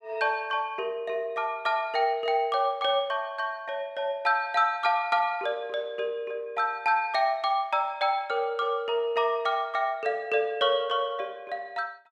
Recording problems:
none

